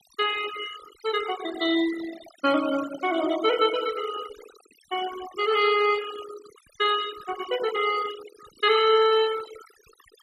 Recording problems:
noise reduction artefacts; signal-to-artefact ratio 13 dB

